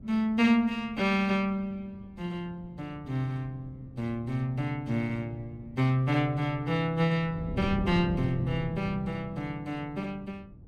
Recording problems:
wind on the microphone; below 220 Hz, SNR 13 dB

